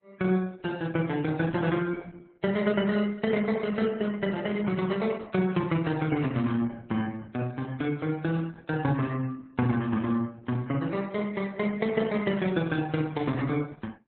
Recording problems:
codec artefacts; MP3, then Opus, log-spectral distance 3 dB, nothing above 4 kHz

